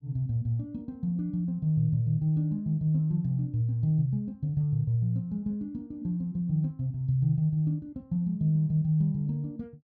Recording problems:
none

